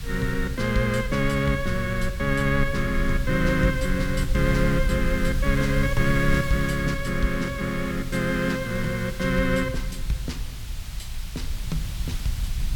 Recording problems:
background hiss; slope +1 dB per octave, SNR 16 dB
low-frequency rumble; below 66 Hz, SNR 7 dB

